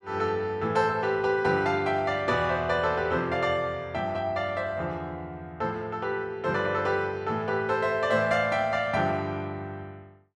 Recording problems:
none

